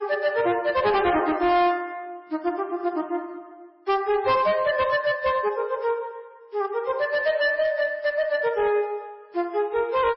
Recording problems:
lossy compression; MP3, log-spectral distance 2 dB, nothing above 4.8 kHz
distortion; hard clipping, uneven, signal-to-distortion ratio 11 dB

